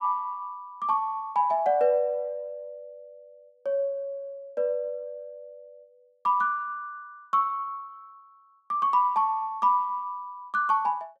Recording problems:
none

